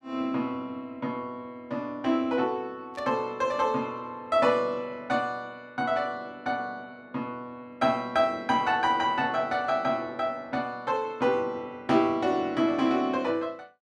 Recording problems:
burst of static; at 3 s; peak -15 dB vs average level

